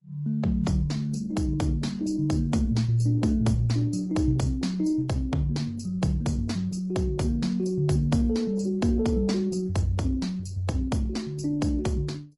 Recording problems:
codec artefacts; Opus, then MP3, log-spectral distance 2 dB, nothing above 11 kHz

